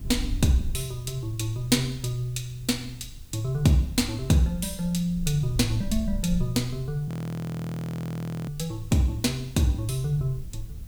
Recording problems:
background hiss; slope 0 dB per octave, SNR 27 dB
rumble; below 72 Hz, SNR 13 dB
audio freezing; at 7 s for 1.5 s

